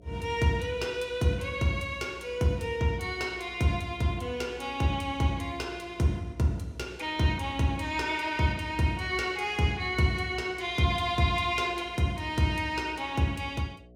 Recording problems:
mains hum; 60 Hz, harmonics up to 720 Hz, SNR 25 dB

